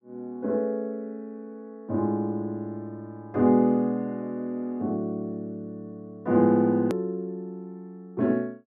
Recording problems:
click at an edit; at 7 s

